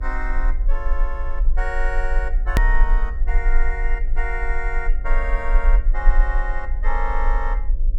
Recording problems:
mains hum; 60 Hz, harmonics up to 600 Hz, SNR 18 dB
low-frequency rumble; below 38 Hz, strongest tone 22 Hz, SNR -5 dB
edit click; at 2.5 s

